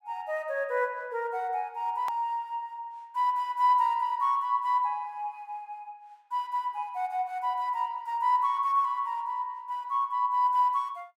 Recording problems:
edit click; at 2 s

